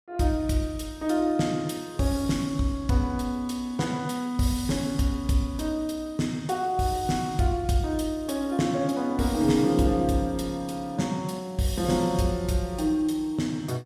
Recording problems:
none

